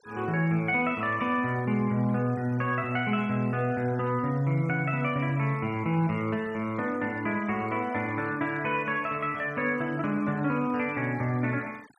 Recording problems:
denoising artefacts; signal-to-artefact ratio 24 dB

